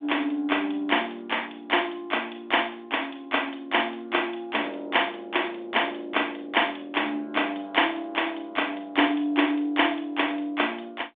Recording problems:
phone line; 240 Hz to 3.6 kHz, G.726

